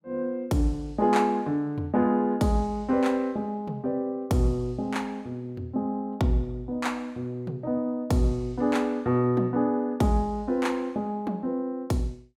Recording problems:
none

